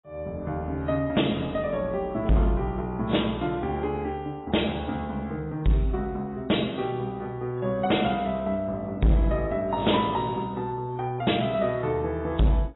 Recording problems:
lossy compression; AAC, log-spectral distance 3 dB, nothing above 3.9 kHz
distorted audio; hard clipping, signal-to-distortion ratio 8 dB

